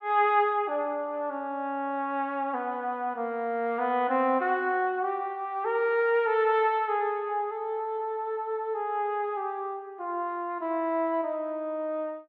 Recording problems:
none

